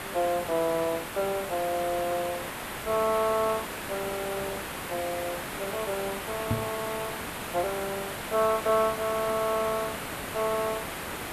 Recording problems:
background hiss; SNR 5 dB
microphone thump; at 6.5 s; peak +5 dB vs average level

